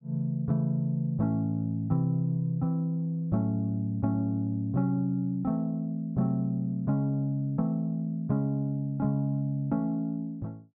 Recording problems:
none

